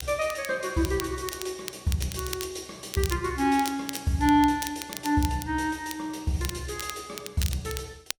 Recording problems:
crackle; vinyl, SNR 11 dB

